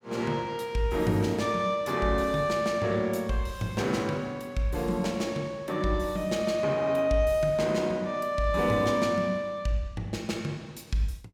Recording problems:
none

